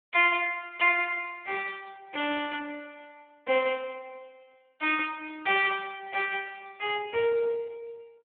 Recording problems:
telephone audio; 280 Hz to 3.5 kHz, Speex

